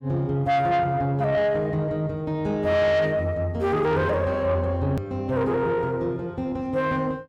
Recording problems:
distortion; soft clipping, signal-to-distortion ratio 11 dB
click at an edit; at 5 s

